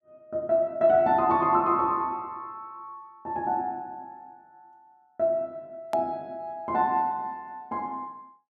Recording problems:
hard cut with a click; at 6 s

